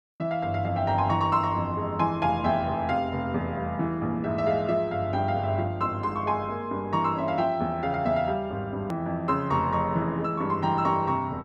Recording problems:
hard cut with a click; at 9 s

